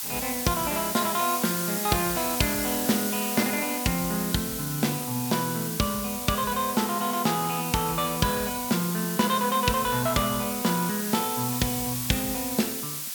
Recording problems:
background hiss; slope +2 dB per octave, SNR 3 dB

